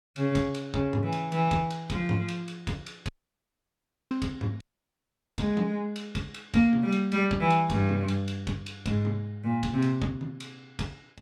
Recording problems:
audio cutting out; at 3 s for 1 s and at 4.5 s for 1 s

